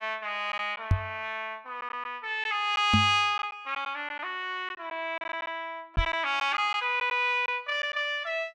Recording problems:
packet loss; 5% of the sound replaced, filled with silence
microphone thump; at 1 s, at 3 s and at 6 s; peak +8 dB vs average level

